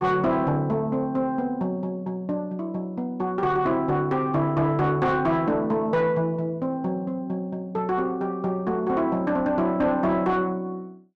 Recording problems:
distortion; soft clipping, signal-to-distortion ratio 11 dB

